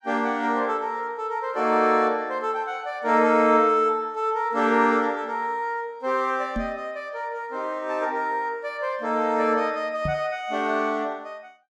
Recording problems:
microphone bump; at 6.5 s and at 10 s; peak -2 dB vs average level

